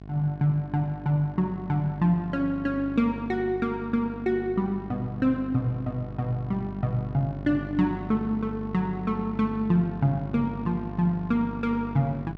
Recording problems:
hum; 50 Hz, harmonics up to 1.1 kHz, SNR 12 dB

